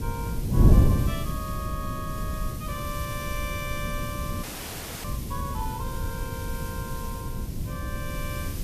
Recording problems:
background hiss; SNR 5 dB
wind noise; below 160 Hz, SNR -8 dB
frozen audio; at 4.5 s for 0.5 s

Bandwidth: 14.5 kHz